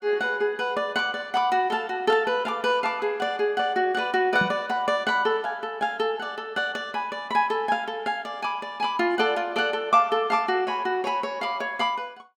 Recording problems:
microphone thump; at 4.5 s; peak 0 dB vs average level

